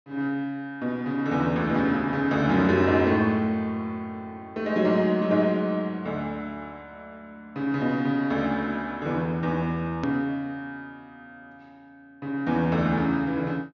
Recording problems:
low-pass filter; nothing above 6.7 kHz
click at an edit; at 10 s

